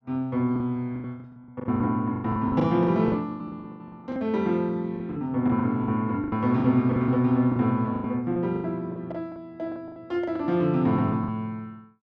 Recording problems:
lost packets; 17% of the sound replaced, filled with the last packet

